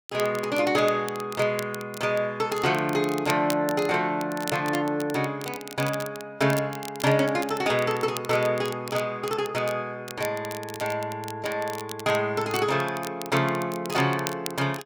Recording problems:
crackling; vinyl, SNR 14 dB

